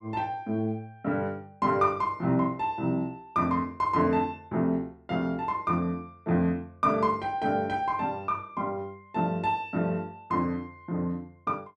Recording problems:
none

